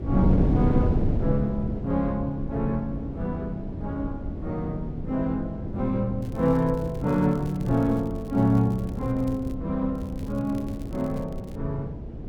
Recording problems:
wind noise; below 240 Hz, SNR 4 dB
crackling; from 6 to 9.5 s and from 10 to 12 s; loose cable, SNR 27 dB

